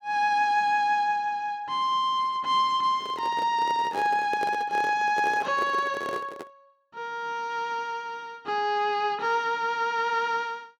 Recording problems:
handling noise; from 3 to 6.5 s; peak -5 dB vs average level

